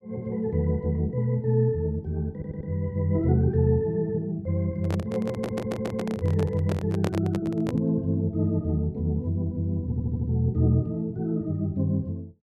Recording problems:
audio stuttering; at 2.5 s, at 5.5 s and at 10 s
microphone handling noise; from 5 to 8 s; peak 0 dB vs average level

